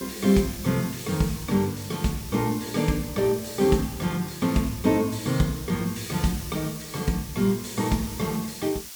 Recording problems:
hiss; slope +3 dB per octave, SNR 13 dB

